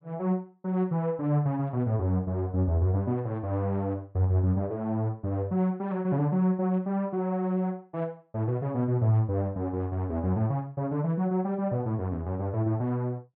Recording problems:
none

